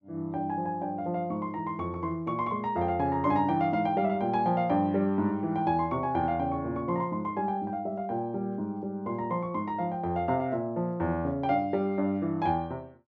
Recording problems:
treble cut off; nothing above 8 kHz

